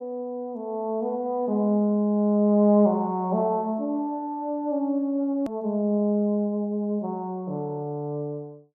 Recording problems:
hard cut with a click; at 5.5 s

